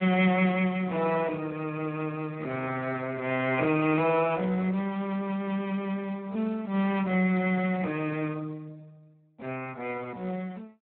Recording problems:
telephone audio; 170 Hz to 3.1 kHz, Speex

